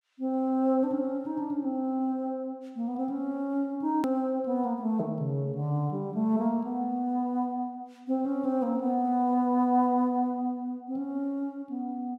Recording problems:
hard cut with a click; at 4 s

